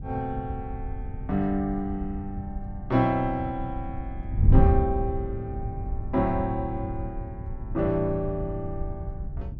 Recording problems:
wind noise; below 100 Hz, SNR 3 dB

